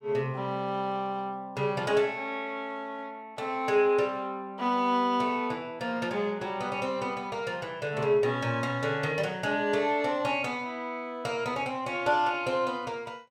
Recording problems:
none

